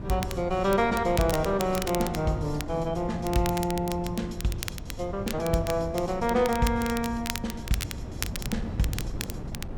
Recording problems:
wind on the microphone; below 210 Hz, SNR 10 dB
crackle; vinyl, SNR 10 dB

